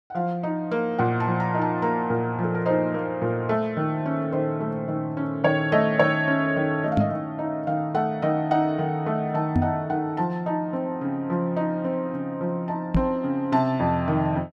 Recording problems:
microphone thump; at 7 s, at 9.5 s and at 13 s; peak +6 dB vs average level

